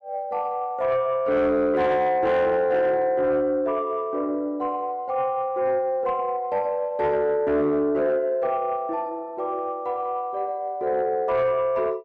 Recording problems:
distortion; soft clipping, signal-to-distortion ratio 12 dB

